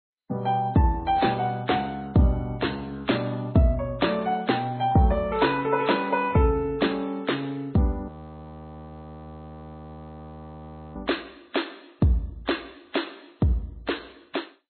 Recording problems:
lossy codec; MP2, then MP3, log-spectral distance 4 dB, nothing above 4.2 kHz
frozen audio; at 8 s for 3 s

